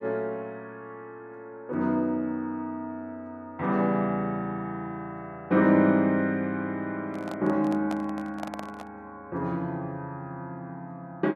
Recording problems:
microphone handling noise; from 7 to 9 s; peak -4 dB vs average level

